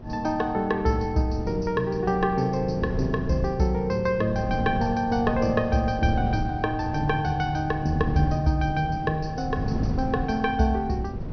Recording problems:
low-pass filter; nothing above 6.1 kHz
wind noise; below 200 Hz, SNR 8 dB

